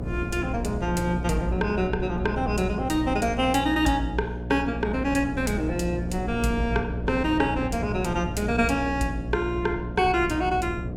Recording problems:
hum; 60 Hz, harmonics up to 720 Hz, SNR 7 dB
wind noise; below 220 Hz, SNR 11 dB

